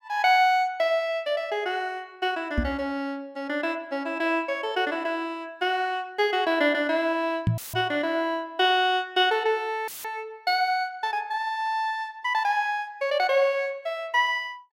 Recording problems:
microphone thump; at 2.5 s and at 7.5 s; peak +5 dB vs average level
dropout; at 7.5 s and at 10 s; filled with static

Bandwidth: 16 kHz